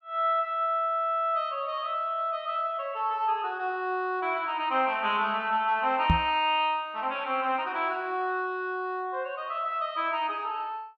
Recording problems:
knock on the microphone; at 6 s; peak +7 dB vs average level

